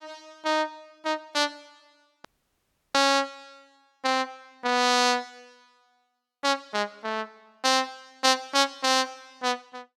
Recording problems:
dropout; at 2.5 s for 0.5 s

